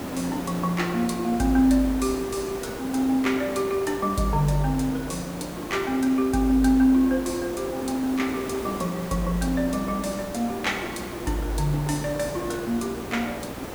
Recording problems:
electrical hum; 60 Hz, harmonics up to 1 kHz, SNR 23 dB
hiss; slope -7 dB per octave, SNR 10 dB

